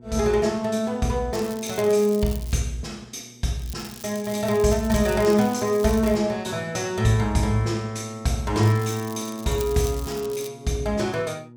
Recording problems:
mains hum; 60 Hz, harmonics up to 840 Hz, SNR 24 dB
crackling; from 1.5 to 2.5 s, from 3.5 to 6 s and from 8.5 to 10 s; loose cable, SNR 17 dB

